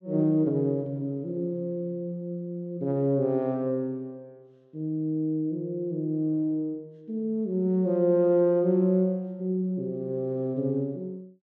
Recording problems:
none

